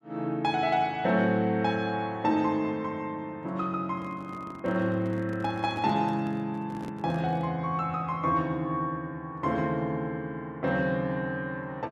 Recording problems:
handling noise; from 4 to 7.5 s; peak -7 dB vs average level

